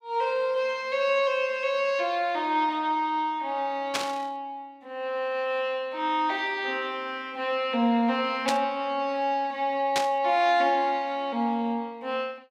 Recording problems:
static burst; at 4 s, at 8.5 s and at 10 s; peak +3 dB vs average level

